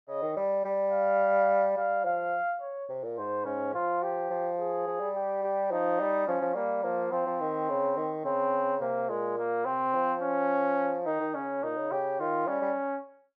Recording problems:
none

